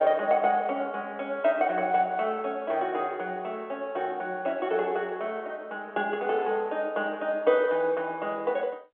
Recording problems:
phone line; 280 Hz to 3.3 kHz, G.711

